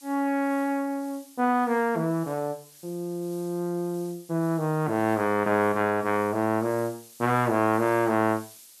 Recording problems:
hiss; SNR 22 dB

